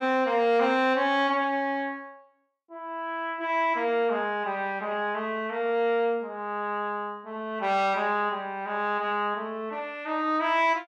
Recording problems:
none

